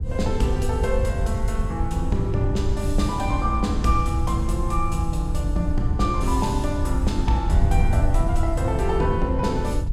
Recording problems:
wind noise; below 86 Hz, SNR 0 dB

